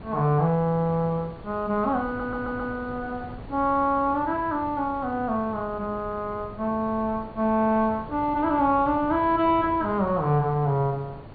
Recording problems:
treble missing; nothing above 4.6 kHz
hiss; SNR 29 dB
wind noise; below 510 Hz, SNR 17 dB
stutter; at 2 s

